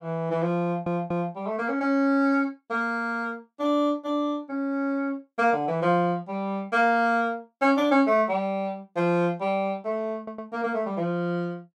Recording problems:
audio stuttering; at 0.5 s and at 10 s

